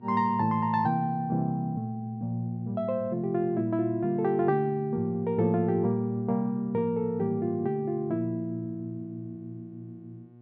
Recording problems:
hum; 60 Hz, harmonics up to 720 Hz, SNR 23 dB

